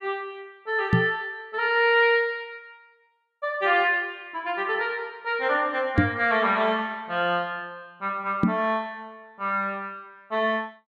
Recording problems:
knock on the microphone; at 1 s, at 6 s and at 8.5 s; peak +8 dB vs average level

